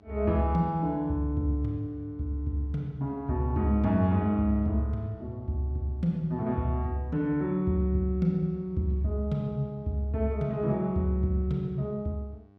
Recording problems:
hum; 50 Hz, harmonics up to 1.5 kHz, SNR 28 dB

